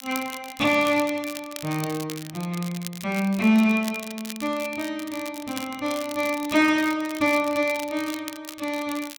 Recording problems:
crackling; vinyl, SNR 14 dB

